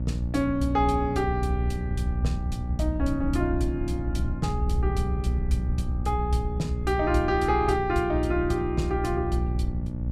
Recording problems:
hum; 60 Hz, harmonics up to 600 Hz, SNR 6 dB
low-frequency rumble; below 76 Hz, strongest tone 62 Hz, SNR 3 dB

